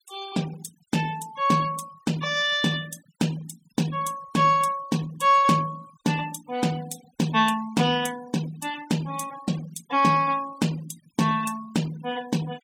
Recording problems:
denoising artefacts; signal-to-artefact ratio 18 dB

